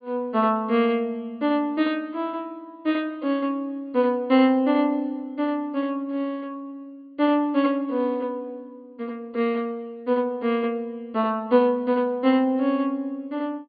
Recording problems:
treble missing; nothing above 4.7 kHz

